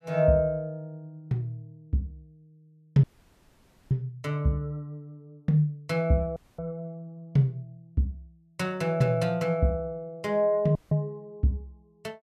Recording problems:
dropout; at 3 s for 1 s, at 6.5 s and at 11 s

